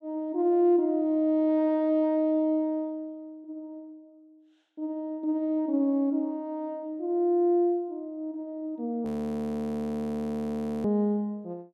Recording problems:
frozen audio; at 9 s for 2 s

